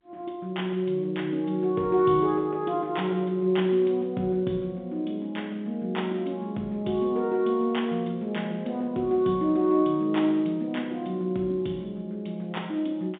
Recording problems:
telephone audio; 150 Hz to 3.7 kHz, G.711

